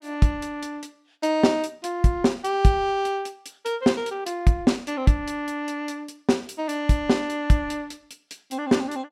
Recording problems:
none

